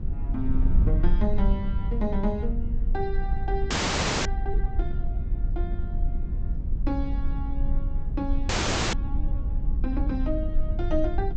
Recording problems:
treble cut off; nothing above 8 kHz
wind noise; below 56 Hz, SNR -4 dB
frozen audio; at 3.5 s for 0.5 s and at 8.5 s

